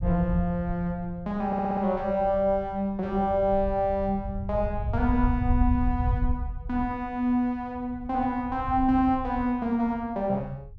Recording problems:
rumble; below 90 Hz, SNR 6 dB
audio stuttering; at 1.5 s

